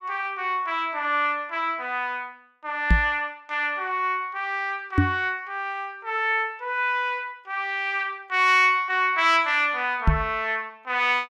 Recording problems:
knock on the microphone; at 3 s, at 5 s and at 10 s; peak +7 dB vs average level

